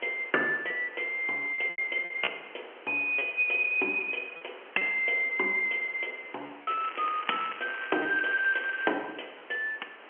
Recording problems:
telephone audio; 260 Hz to 3.2 kHz, G.711
background hiss; SNR 20 dB
lost packets; 5% of the sound replaced, filled with repeated pitch periods
crackle; from 6.5 to 9 s; loose cable, SNR 14 dB

